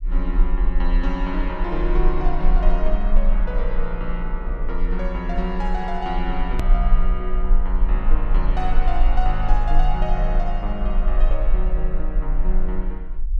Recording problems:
low-frequency rumble; below 36 Hz, strongest tone 20 Hz, SNR -4 dB
hard cut with a click; at 6.5 s

